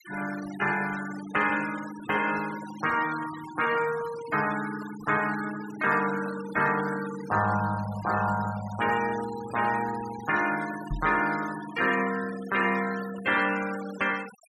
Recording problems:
denoising artefacts; signal-to-artefact ratio 14 dB
knock on the microphone; at 11 s; peak -1 dB vs average level

